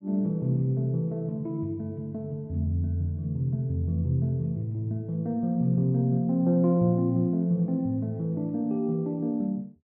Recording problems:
none

